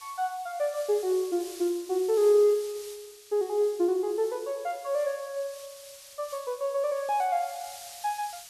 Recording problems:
hiss; slope +4 dB per octave, SNR 17 dB

